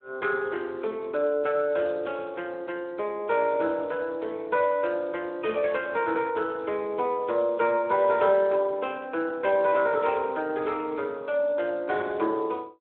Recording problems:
phone line; 260 Hz to 3.7 kHz, Speex

